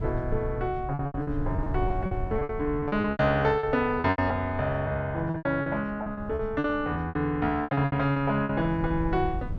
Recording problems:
wind on the microphone; below 110 Hz, SNR 11 dB
lost packets; 16% of the sound replaced, filled with repeated pitch periods

